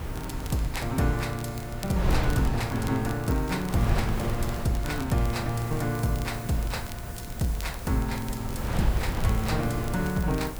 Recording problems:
background hiss; SNR 17 dB
wind on the microphone; below 210 Hz, SNR 4 dB
crackling; vinyl, SNR 18 dB

